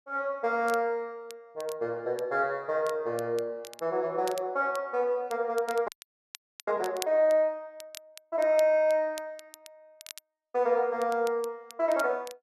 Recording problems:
crackle; vinyl, SNR 19 dB
frozen audio; at 6 s for 1 s

